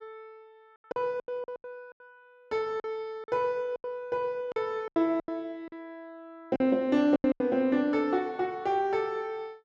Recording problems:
packet loss; 11% of the sound replaced, filled with silence

